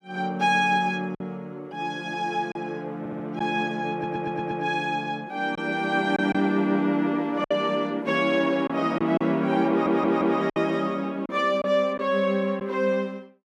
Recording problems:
packet loss; 3% of the sound replaced, filled with silence
stutter; at 3 s, at 4 s and at 9.5 s

